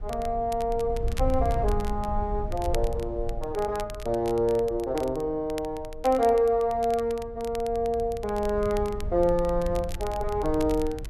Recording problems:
low-frequency rumble; below 74 Hz, SNR 10 dB
crackling; vinyl, SNR 20 dB

